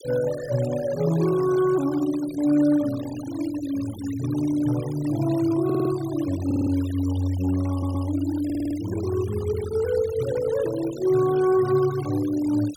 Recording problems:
denoising artefacts; signal-to-artefact ratio 18 dB
stutter; 4 times, first at 5.5 s

